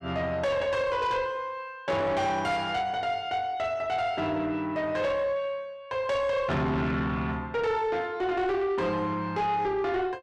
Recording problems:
distortion; soft clipping, signal-to-distortion ratio 10 dB

